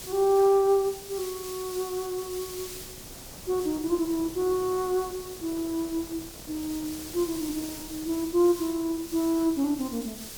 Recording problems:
hiss; SNR 12 dB
wind noise; below 580 Hz, SNR 21 dB

